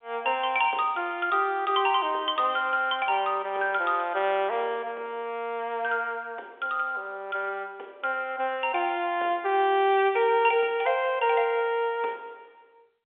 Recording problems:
phone line; 340 Hz to 3.5 kHz, G.711

